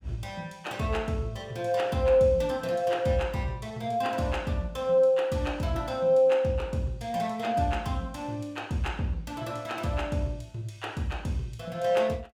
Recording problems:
none

